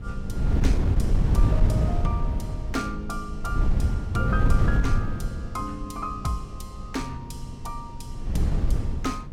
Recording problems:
wind noise; below 110 Hz, SNR -7 dB

